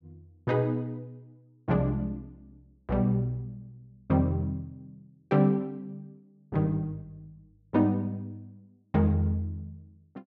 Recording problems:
none

